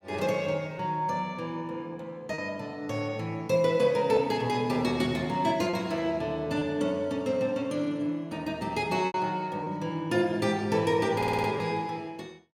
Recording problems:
lost packets; 1.9% of the sound replaced, filled with repeated pitch periods
stutter; at 11 s

